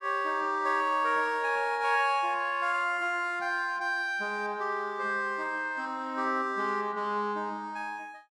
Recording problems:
none

